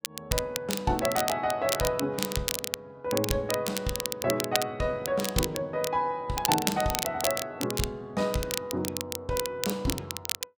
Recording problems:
crackling; vinyl, SNR 3 dB

